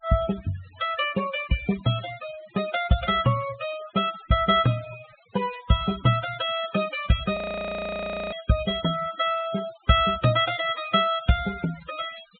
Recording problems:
treble missing; nothing above 4 kHz
noise reduction artefacts; signal-to-artefact ratio 16 dB
frozen audio; at 7.5 s for 1 s

